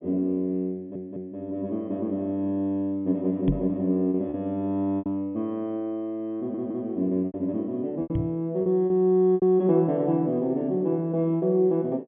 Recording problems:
low-pass filter; nothing above 3.5 kHz
lost packets; 5% of the sound replaced, filled with repeated pitch periods
audio stuttering; at 1 s and at 6.5 s
microphone bump; at 3.5 s and at 8 s; peak +3 dB vs average level

